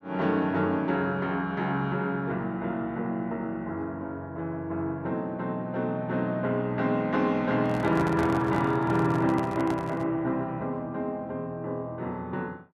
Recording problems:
handling noise; from 7.5 to 10 s; peak -4 dB vs average level

